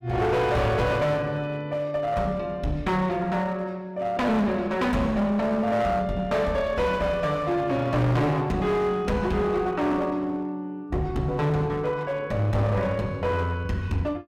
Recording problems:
distorted audio; hard clipping, uneven, signal-to-distortion ratio 7 dB

